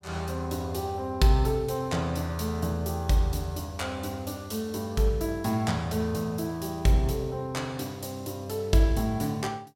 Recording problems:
none

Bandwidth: 16.5 kHz